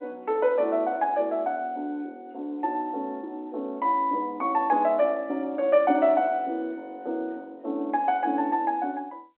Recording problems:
phone line; 240 Hz to 3.4 kHz, G.711

